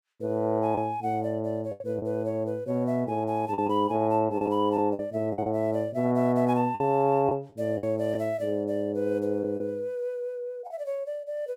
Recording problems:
packet loss; 5% of the sound replaced, filled with the last packet

